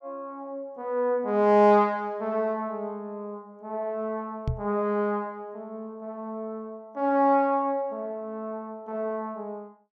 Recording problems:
microphone thump; at 4.5 s; peak +2 dB vs average level

